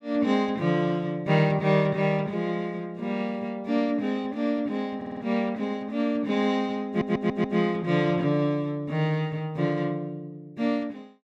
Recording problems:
audio stuttering; at 5 s and at 7 s

